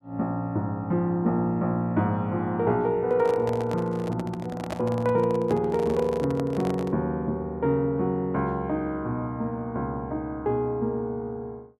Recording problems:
microphone handling noise; from 3 to 7 s; peak -3 dB vs average level

